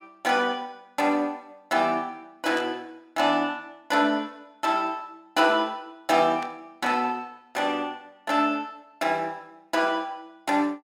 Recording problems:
static burst; at 2.5 s and at 6.5 s; peak -10 dB vs average level

